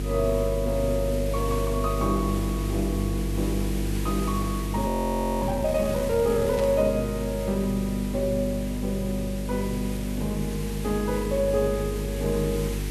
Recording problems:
hum; 50 Hz, harmonics up to 450 Hz, SNR 5 dB
background hiss; slope -1 dB per octave, SNR 13 dB
frozen audio; at 5 s for 0.5 s
static burst; at 6.5 s; peak -7 dB vs average level

